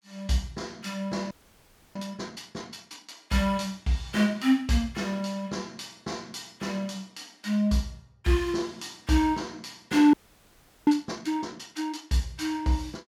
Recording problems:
frozen audio; at 1.5 s for 0.5 s and at 10 s for 0.5 s

